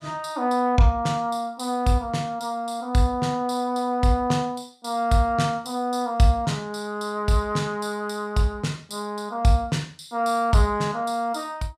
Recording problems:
none

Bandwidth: 15 kHz